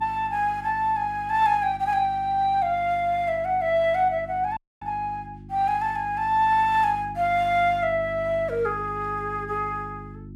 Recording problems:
hum; 50 Hz, harmonics up to 350 Hz, SNR 18 dB
dropout; at 4.5 s

